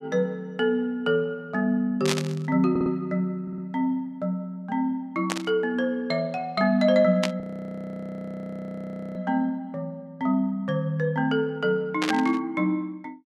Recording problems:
burst of static; 4 times, first at 2 s; peak +4 dB vs average level
stutter; at 2.5 s and at 3.5 s
frozen audio; at 7.5 s for 2 s

